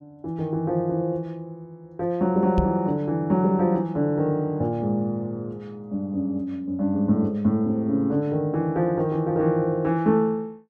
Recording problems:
microphone thump; at 2.5 s; peak +4 dB vs average level

